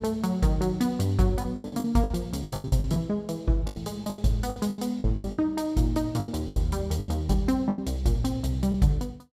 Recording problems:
lost packets; 15% of the sound replaced, filled with the last packet

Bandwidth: 15.5 kHz